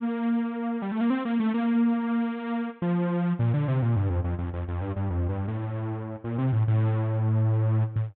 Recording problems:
treble cut off; nothing above 4 kHz

